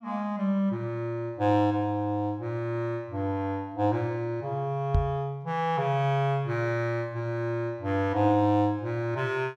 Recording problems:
knock on the microphone; at 5 s; peak +6 dB vs average level

